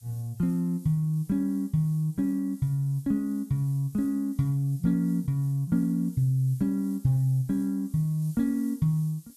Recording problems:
hiss; SNR 26 dB

